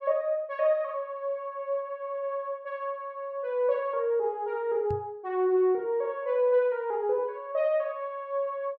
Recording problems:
knock on the microphone; at 5 s; peak -4 dB vs average level

